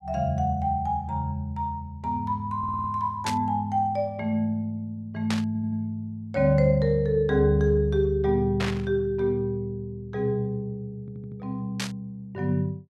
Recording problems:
audio stuttering; at 2.5 s, at 5.5 s and at 11 s
static burst; 4 times, first at 3.5 s; peak 0 dB vs average level

